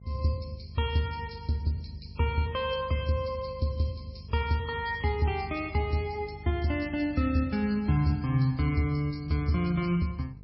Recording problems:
lossy codec; MP3, log-spectral distance 4 dB, nothing above 5.5 kHz
hum; 50 Hz, harmonics up to 500 Hz, SNR 19 dB

